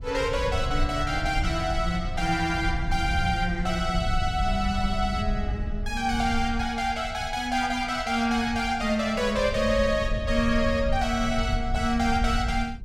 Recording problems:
low-frequency rumble; below 88 Hz, SNR 6 dB

